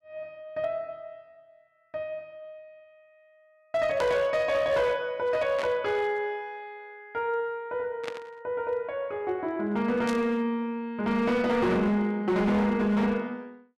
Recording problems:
distortion; hard clipping, signal-to-distortion ratio 11 dB
static burst; 4 times, first at 4 s; peak -5 dB vs average level

